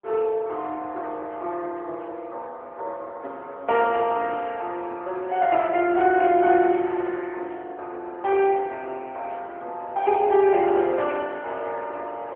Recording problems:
phone line; 300 Hz to 3.3 kHz, AMR-NB

